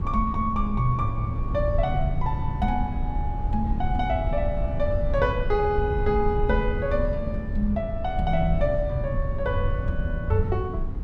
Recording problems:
rumble; below 94 Hz, SNR 2 dB

